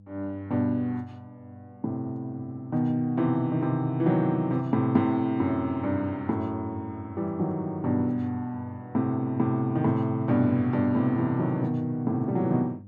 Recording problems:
electrical hum; 50 Hz, harmonics up to 500 Hz, SNR 22 dB

